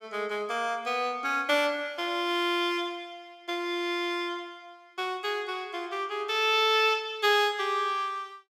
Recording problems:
none

